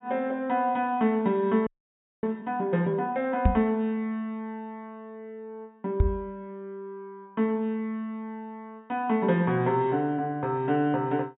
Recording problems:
treble cut off; nothing above 4 kHz
frozen audio; at 1.5 s for 0.5 s
microphone thump; at 3.5 s and at 6 s; peak +9 dB vs average level

